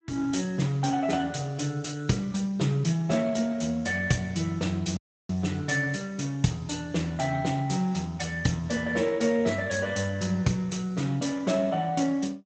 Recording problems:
codec artefacts; Speex, log-spectral distance 5 dB, nothing above 7.8 kHz
audio cutting out; at 5 s

